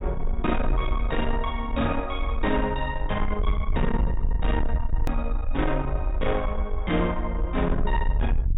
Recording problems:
treble cut off; nothing above 4 kHz
distorted audio; soft clipping, signal-to-distortion ratio 10 dB
low-frequency rumble; below 58 Hz, SNR 2 dB
click at an edit; at 5 s

